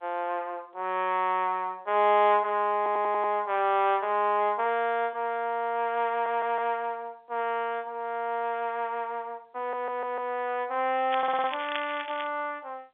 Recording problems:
telephone audio; 320 Hz to 3.6 kHz, G.711
audio stuttering; 4 times, first at 3 s
crackling; from 11 to 12 s; loose cable, SNR 12 dB

